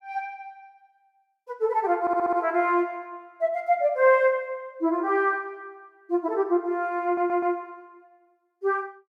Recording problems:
stutter; at 2 s and at 7 s

